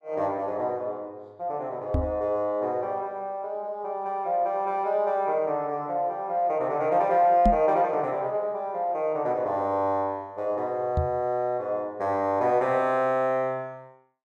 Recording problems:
microphone thump; at 2 s, at 7.5 s and at 11 s; peak +5 dB vs average level

